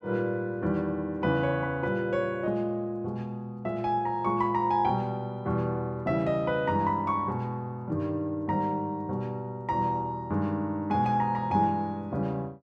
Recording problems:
none

